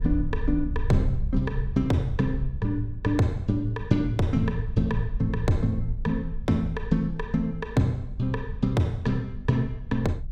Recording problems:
wind on the microphone; below 68 Hz, SNR 8 dB

